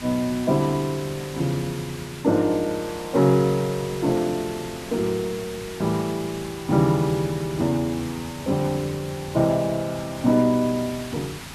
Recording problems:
background hiss; slope -1 dB per octave, SNR 13 dB

